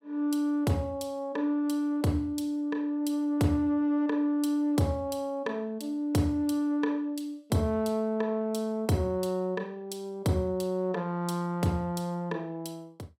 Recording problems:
none

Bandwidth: 16.5 kHz